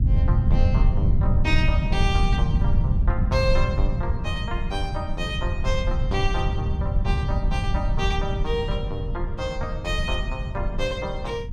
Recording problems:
rumble; below 110 Hz, SNR -4 dB

